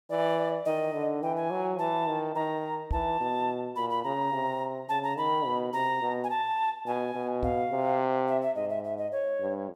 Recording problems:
microphone bump; at 3 s and at 7.5 s; peak +1 dB vs average level

